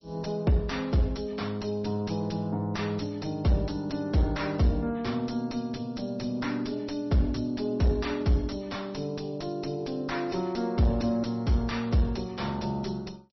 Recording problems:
codec artefacts; MP3, log-spectral distance 4 dB, nothing above 5.8 kHz
distorted audio; soft clipping, signal-to-distortion ratio 7 dB

